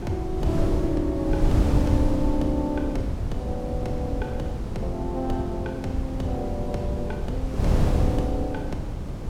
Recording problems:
wind noise; below 160 Hz, SNR -2 dB

